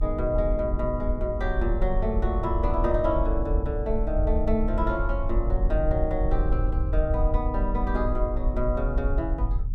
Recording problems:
rumble; below 56 Hz, SNR 0 dB

